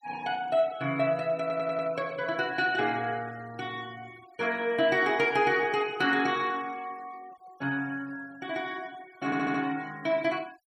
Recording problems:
noise reduction artefacts; signal-to-artefact ratio 24 dB
stutter; at 1.5 s and at 9.5 s

